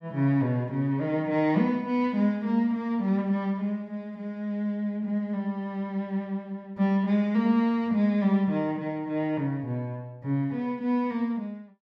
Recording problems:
none

